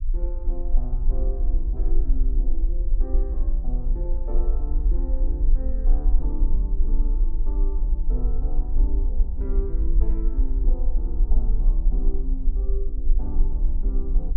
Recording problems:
low-frequency rumble; below 42 Hz, strongest tone 22 Hz, SNR -13 dB

